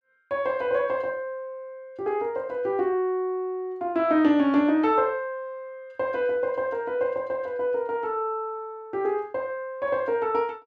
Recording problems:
none

